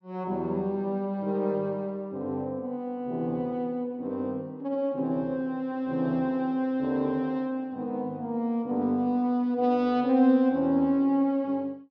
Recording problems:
none

